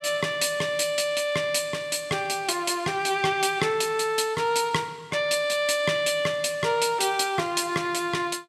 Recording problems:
none

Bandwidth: 14 kHz